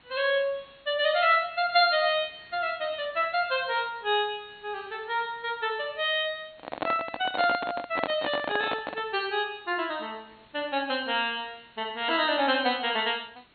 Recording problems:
treble missing; nothing above 4.4 kHz
background hiss; SNR 30 dB
microphone handling noise; from 6.5 to 9 s; peak +2 dB vs average level

